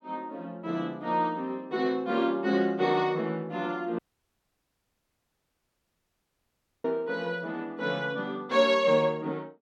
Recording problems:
dropout; at 4 s for 3 s

